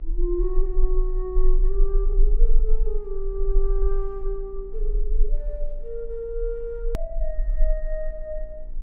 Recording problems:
hum; 60 Hz, harmonics up to 1.3 kHz, SNR 21 dB
low-frequency rumble; below 32 Hz, strongest tone 20 Hz, SNR -5 dB
click at an edit; at 7 s

